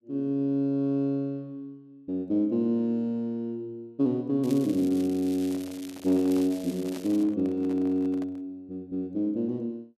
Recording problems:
crackling; from 4.5 to 7 s; loose cable, SNR 19 dB
handling noise; from 5.5 to 8.5 s; peak -11 dB vs average level

